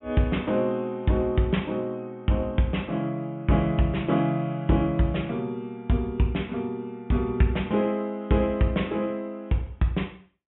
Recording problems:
treble cut off; nothing above 3.5 kHz

